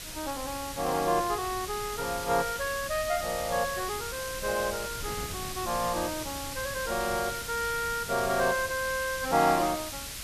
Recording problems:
hiss; slope +3 dB per octave, SNR 7 dB
wind noise; below 210 Hz, SNR 16 dB

